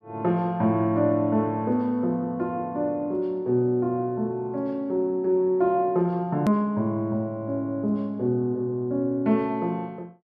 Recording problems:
hard cut with a click; at 6.5 s

